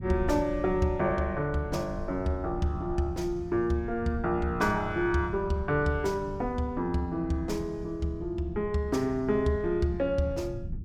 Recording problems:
rumble; below 130 Hz, SNR 12 dB

